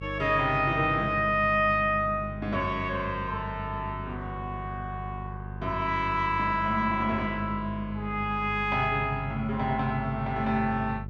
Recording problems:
electrical hum; 50 Hz, harmonics up to 450 Hz, SNR 11 dB

